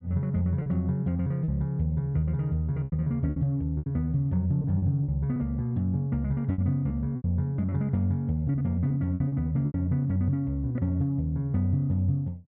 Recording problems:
lost packets; 7% of the sound replaced, filled with repeated pitch periods

